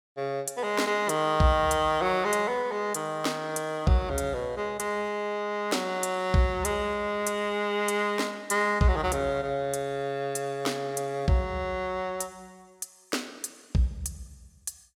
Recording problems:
none

